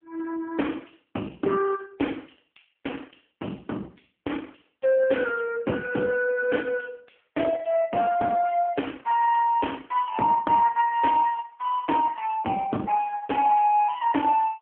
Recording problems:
telephone audio; 260 Hz to 2.9 kHz, AMR-NB

